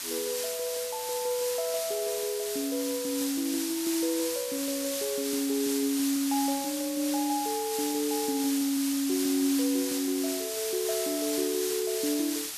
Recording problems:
hiss; slope +3 dB per octave, SNR 3 dB

